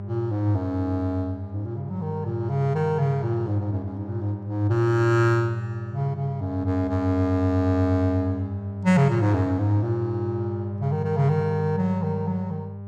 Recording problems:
electrical hum; 50 Hz, harmonics up to 800 Hz, SNR 9 dB

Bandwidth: 14 kHz